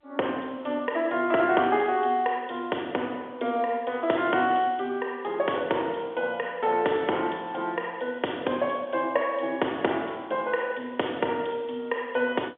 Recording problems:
phone line; 300 Hz to 3.4 kHz, G.711

